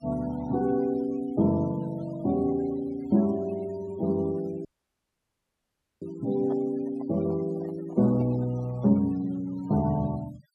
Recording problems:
noise reduction artefacts; signal-to-artefact ratio 22 dB
audio cutting out; at 4.5 s for 1.5 s
handling noise; from 6.5 to 9 s; peak -9 dB vs average level

